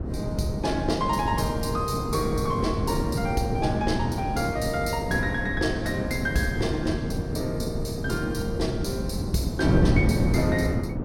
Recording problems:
wind noise; below 290 Hz, SNR 0 dB

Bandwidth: 16.5 kHz